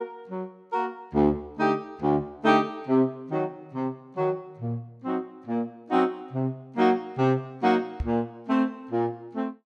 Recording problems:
microphone bump; at 8 s; peak 0 dB vs average level

